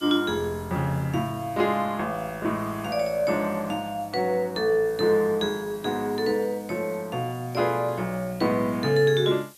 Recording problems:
hiss; SNR 23 dB

